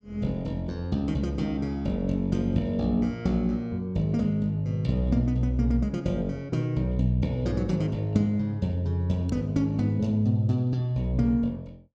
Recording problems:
none

